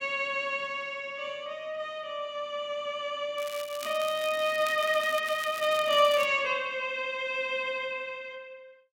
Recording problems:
crackle; from 3.5 to 6.5 s; loose cable, SNR 14 dB

